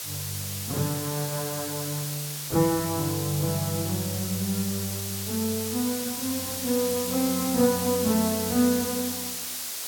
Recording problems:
background hiss; slope +2 dB per octave, SNR 3 dB

